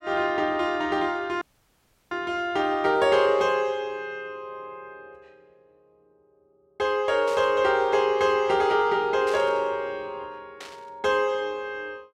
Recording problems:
audio cutting out; at 1.5 s for 0.5 s
static burst; 4 times, first at 3 s; peak -11 dB vs average level

